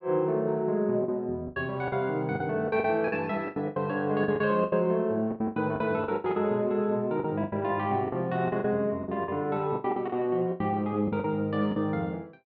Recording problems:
lost packets; 14% of the sound replaced, filled with the last packet

